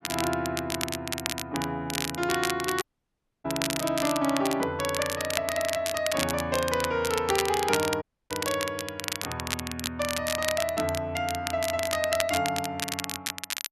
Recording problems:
crackling; vinyl, SNR 3 dB
dropout; at 3 s for 0.5 s and at 8 s

